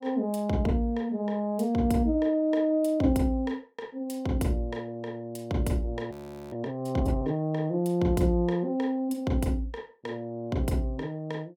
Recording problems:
frozen audio; at 6 s

